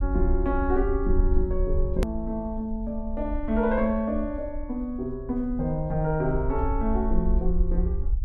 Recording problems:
rumble; below 58 Hz, SNR 3 dB
edit click; at 2 s

